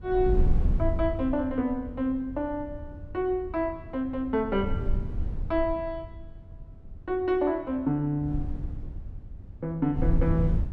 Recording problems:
wind on the microphone; below 82 Hz, SNR 4 dB

